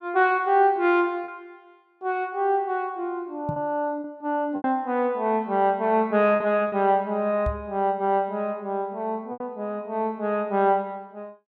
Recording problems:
lost packets; 3% of the sound replaced, filled with repeated pitch periods
knock on the microphone; at 3.5 s and at 7.5 s; peak -1 dB vs average level

